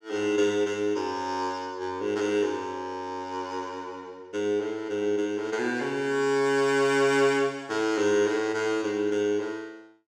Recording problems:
none

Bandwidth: 16.5 kHz